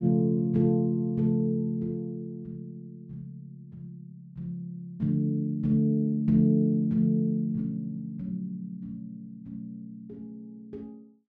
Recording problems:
none

